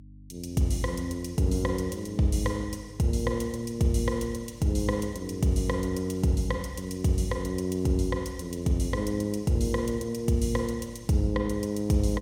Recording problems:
hum; 50 Hz, harmonics up to 300 Hz, SNR 23 dB

